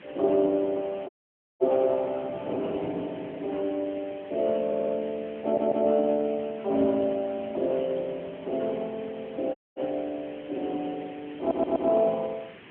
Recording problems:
telephone audio; 280 Hz to 2.8 kHz, AMR-NB
background hiss; SNR 21 dB
wind on the microphone; below 490 Hz, SNR 19 dB
dropout; at 1 s for 0.5 s and at 9.5 s
audio stuttering; at 4.5 s, at 5.5 s and at 11 s

